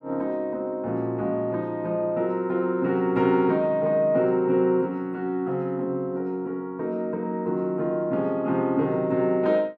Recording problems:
none

